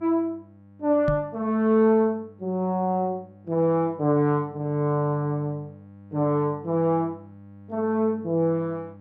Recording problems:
mains hum; 50 Hz, harmonics up to 1.4 kHz, SNR 24 dB
microphone thump; at 1 s; peak +1 dB vs average level

